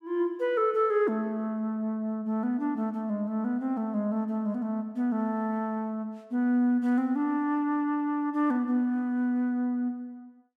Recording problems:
none

